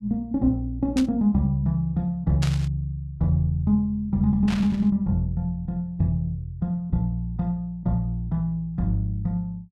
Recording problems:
burst of static; at 1 s, at 2.5 s and at 4.5 s; peak -3 dB vs average level

